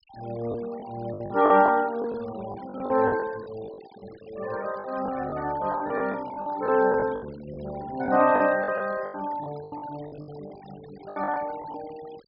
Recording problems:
low-pass filter; nothing above 5.5 kHz
noise reduction artefacts; signal-to-artefact ratio 21 dB
packet loss; 13% of the sound replaced, filled with the last packet

